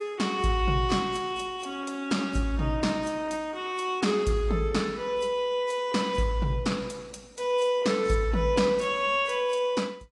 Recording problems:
codec artefacts; AAC, log-spectral distance 3 dB, nothing above 10.4 kHz

